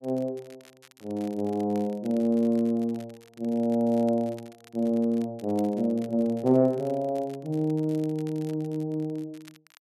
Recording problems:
crackling; vinyl, SNR 27 dB

